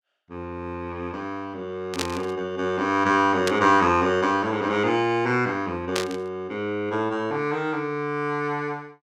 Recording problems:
burst of static; at 2 s, at 3.5 s and at 6 s; peak +2 dB vs average level

